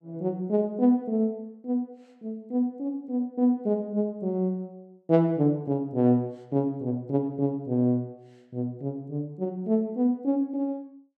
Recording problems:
none

